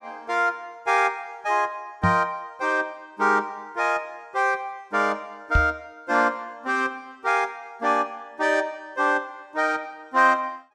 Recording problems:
microphone bump; at 2 s and at 5.5 s; peak +6 dB vs average level

